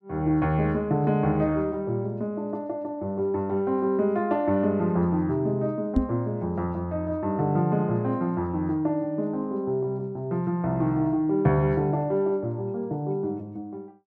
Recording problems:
microphone bump; at 6 s; peak +6 dB vs average level

